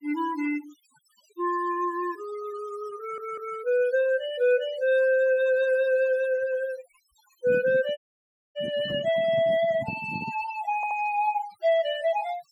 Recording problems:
denoising artefacts; signal-to-artefact ratio 20 dB
stutter; at 3 s and at 11 s
microphone handling noise; from 7.5 to 10 s; peak -4 dB vs average level
audio cutting out; at 8 s for 0.5 s

